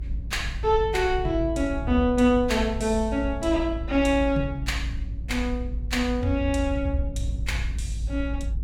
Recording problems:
rumble; below 70 Hz, strongest tone 54 Hz, SNR 6 dB

